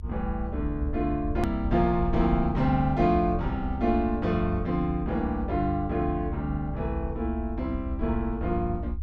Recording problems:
low-frequency rumble; below 70 Hz, SNR 7 dB
edit click; at 1.5 s

